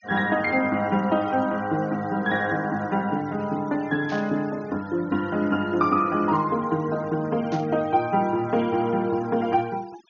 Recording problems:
treble missing; nothing above 6.8 kHz
denoising artefacts; signal-to-artefact ratio 22 dB
static burst; at 4 s and at 7.5 s; peak -13 dB vs average level

